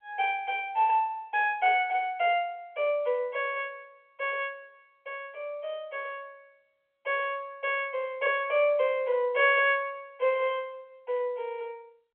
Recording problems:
telephone audio; 340 Hz to 3.3 kHz, G.711

